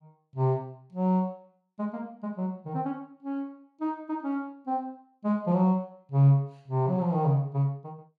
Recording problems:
none

